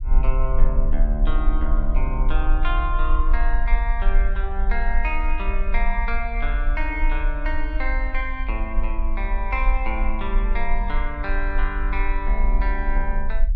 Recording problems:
rumble; below 42 Hz, strongest tone 22 Hz, SNR -4 dB

